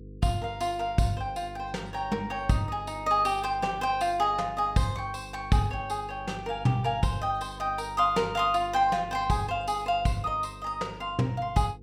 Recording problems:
electrical hum; 50 Hz, harmonics up to 500 Hz, SNR 17 dB

